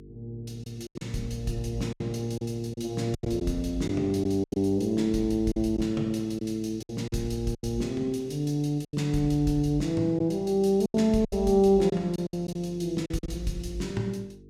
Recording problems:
electrical hum; 50 Hz, harmonics up to 450 Hz, SNR 21 dB
lost packets; 8% of the sound replaced, filled with silence

